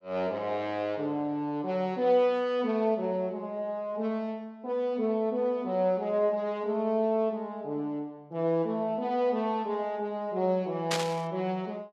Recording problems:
static burst; at 11 s; peak +4 dB vs average level

